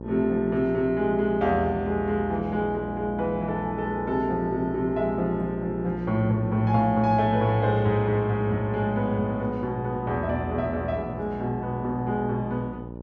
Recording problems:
electrical hum; 60 Hz, harmonics up to 1.1 kHz, SNR 11 dB

